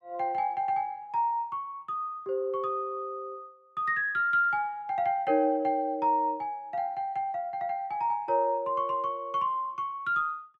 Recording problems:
none

